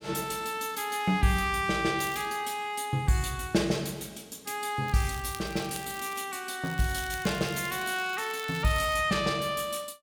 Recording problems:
crackle; at 2 s, from 5 to 6 s and from 6.5 to 9 s; loose cable, SNR 16 dB

